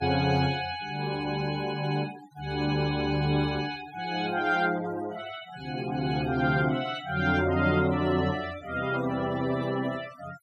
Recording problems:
denoising artefacts; signal-to-artefact ratio 16 dB

